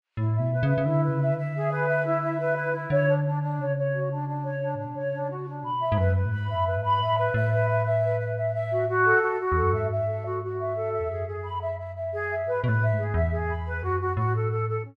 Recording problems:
none

